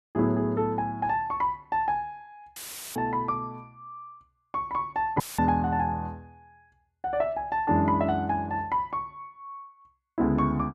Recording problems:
dropout; at 2.5 s and at 5 s; filled with static

